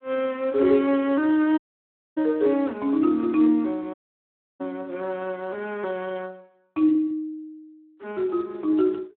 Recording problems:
phone line; 240 Hz to 3.4 kHz, Speex
dropout; at 1.5 s for 0.5 s and at 4 s for 0.5 s

